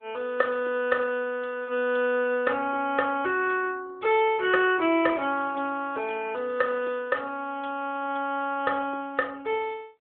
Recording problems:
telephone audio; 300 Hz to 3.4 kHz, AMR-NB

